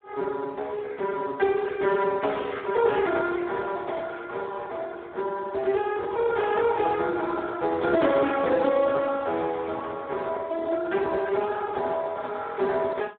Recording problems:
telephone audio; 300 Hz to 2.8 kHz, Speex

